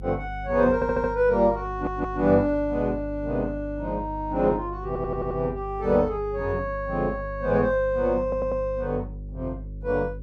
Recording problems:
electrical hum; 50 Hz, harmonics up to 550 Hz, SNR 12 dB
audio stuttering; 4 times, first at 0.5 s

